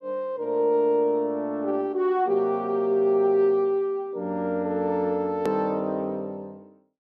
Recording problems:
edit click; at 5.5 s

